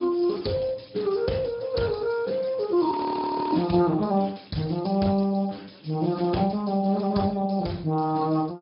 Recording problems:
treble missing; nothing above 5.2 kHz
codec artefacts; Speex, log-spectral distance 5 dB
audio freezing; at 3 s for 0.5 s

